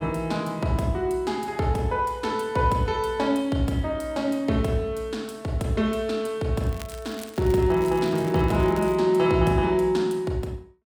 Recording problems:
crackling; from 6.5 to 9 s; loose cable, SNR 21 dB

